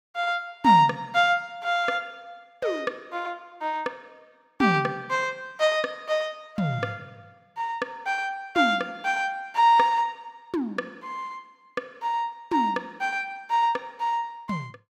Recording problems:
none

